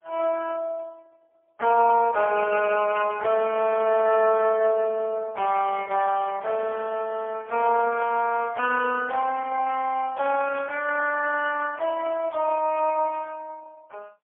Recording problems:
phone line; 340 Hz to 2.9 kHz, AMR-NB, then MP3

